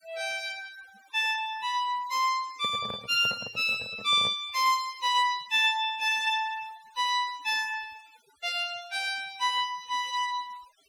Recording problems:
denoising artefacts; signal-to-artefact ratio 23 dB
handling noise; from 2.5 to 4.5 s; peak -9 dB vs average level

